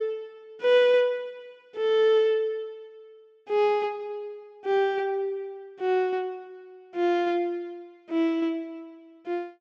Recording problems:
none

